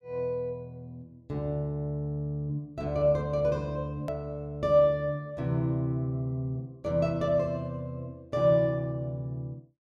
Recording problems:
hard cut with a click; at 4 s

